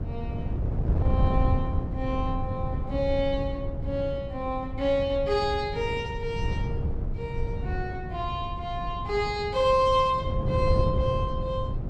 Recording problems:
wind on the microphone; below 130 Hz, SNR 2 dB

